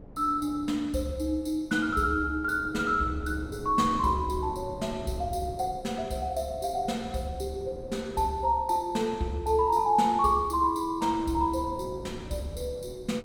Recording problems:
wind noise; below 360 Hz, SNR 16 dB

